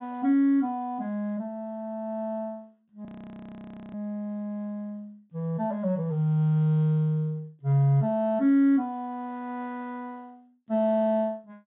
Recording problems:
treble missing; nothing above 3.7 kHz
frozen audio; at 3 s for 1 s

